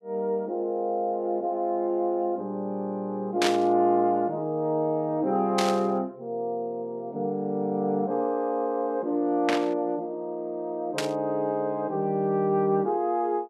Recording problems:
burst of static; 4 times, first at 3.5 s; peak +4 dB vs average level

